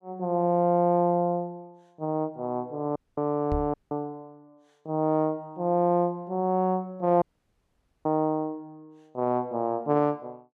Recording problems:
dropout; at 3 s, at 3.5 s and at 7 s for 1 s
microphone bump; at 3.5 s; peak -2 dB vs average level

